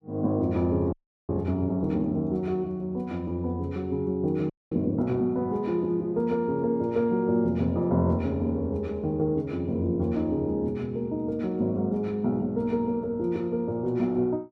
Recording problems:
frozen audio; at 1 s and at 4.5 s

